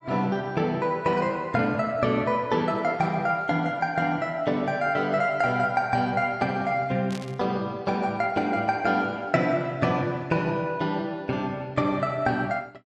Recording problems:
burst of static; at 7 s; peak -10 dB vs average level

